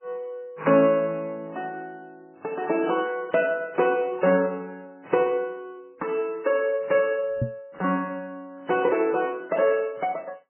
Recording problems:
lossy compression; MP3, then AAC, log-spectral distance 2 dB, nothing above 2.7 kHz
knock on the microphone; at 7.5 s; peak +2 dB vs average level

